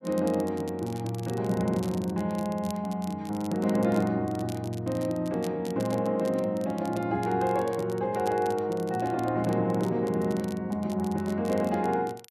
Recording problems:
crackling; vinyl, SNR 21 dB

